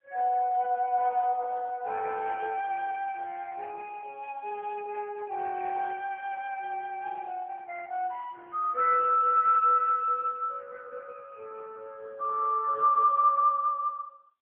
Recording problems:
phone line; 370 Hz to 2.6 kHz, AMR-NB

